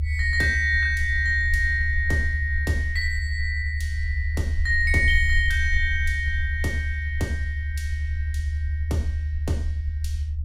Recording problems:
rumble; below 78 Hz, strongest tone 76 Hz, SNR 3 dB

